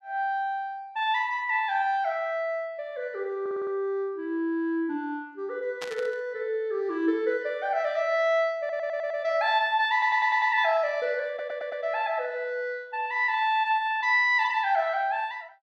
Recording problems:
stutter; 4 times, first at 3.5 s
static burst; at 6 s; peak -6 dB vs average level

